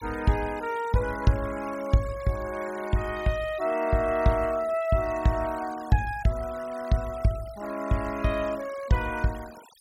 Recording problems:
denoising artefacts; signal-to-artefact ratio 19 dB

